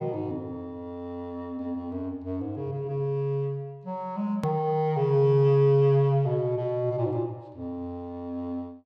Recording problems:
edit click; at 4.5 s

